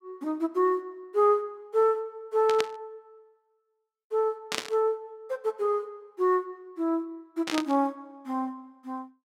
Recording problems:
static burst; at 2.5 s, at 4.5 s and at 7.5 s; peak +2 dB vs average level

